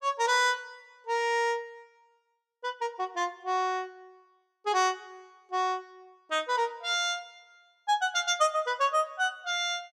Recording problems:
none

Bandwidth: 15 kHz